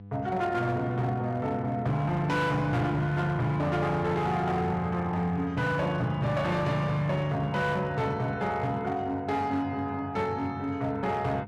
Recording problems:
distortion; hard clipping, signal-to-distortion ratio 11 dB
mains hum; 50 Hz, harmonics up to 700 Hz, SNR 17 dB

